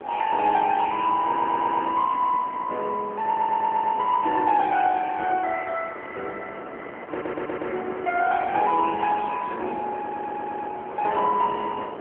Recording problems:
telephone audio; 260 Hz to 3.4 kHz, AMR-NB
wind on the microphone; below 960 Hz, SNR 14 dB
audio stuttering; 4 times, first at 1.5 s

